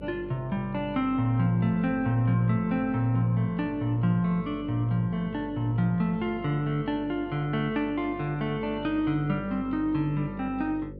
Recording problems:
hum; 50 Hz, harmonics up to 550 Hz, SNR 16 dB

